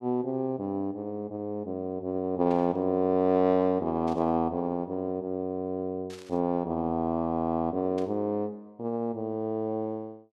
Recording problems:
burst of static; 4 times, first at 2.5 s; peak -14 dB vs average level

